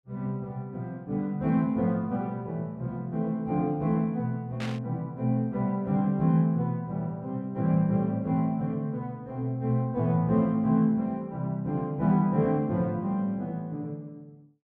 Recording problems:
burst of static; at 4.5 s; peak -7 dB vs average level

